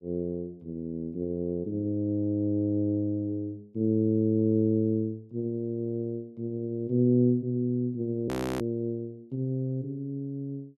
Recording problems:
frozen audio; at 8.5 s

